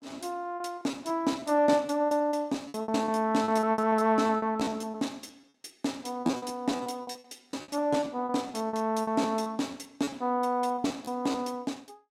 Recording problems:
lost packets; 17% of the sound replaced, filled with repeated pitch periods

